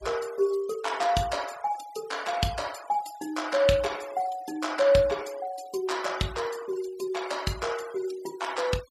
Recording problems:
denoising artefacts; signal-to-artefact ratio 17 dB

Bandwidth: 14.5 kHz